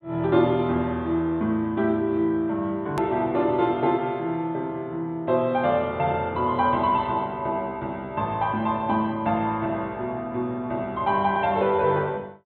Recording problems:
low-pass filter; nothing above 4 kHz
click at an edit; at 3 s

